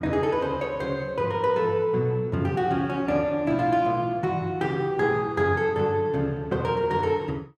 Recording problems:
none

